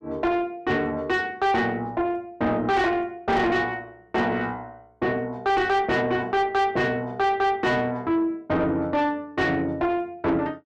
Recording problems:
distortion; soft clipping, signal-to-distortion ratio 8 dB

